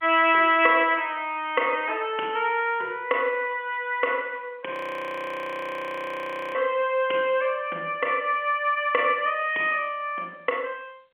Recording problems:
phone line; 300 Hz to 3.6 kHz, G.711
audio freezing; at 4.5 s for 2 s

